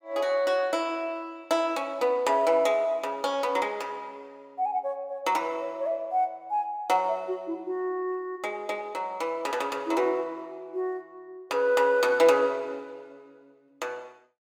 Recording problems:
none

